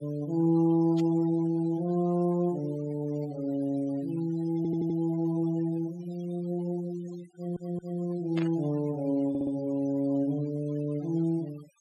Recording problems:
denoising artefacts; signal-to-artefact ratio 22 dB
static burst; at 1 s and at 8.5 s; peak -7 dB vs average level
stutter; at 4.5 s, at 7.5 s and at 9.5 s

